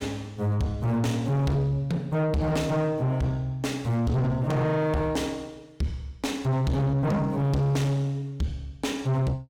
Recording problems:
distorted audio; soft clipping, signal-to-distortion ratio 6 dB

